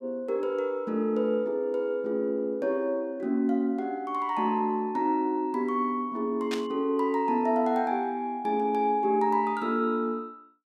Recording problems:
burst of static; at 6.5 s; peak -3 dB vs average level

